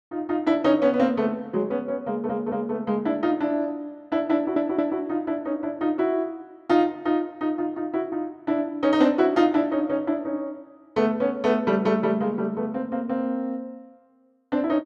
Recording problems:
stutter; at 2 s and at 4.5 s

